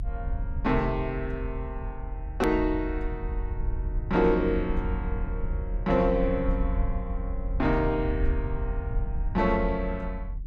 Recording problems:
rumble; below 66 Hz, strongest tone 40 Hz, SNR 4 dB
edit click; at 2.5 s

